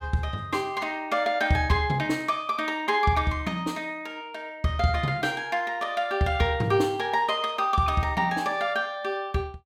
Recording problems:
none

